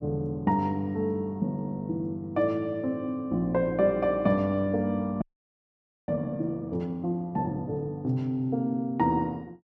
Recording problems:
audio freezing; at 5 s for 1 s

